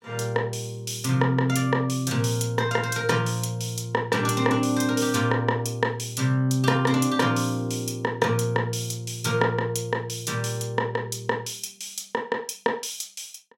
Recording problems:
none

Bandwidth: 16 kHz